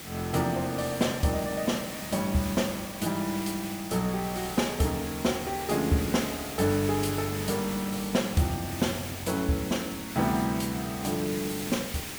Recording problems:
hiss; slope -1 dB per octave, SNR 8 dB

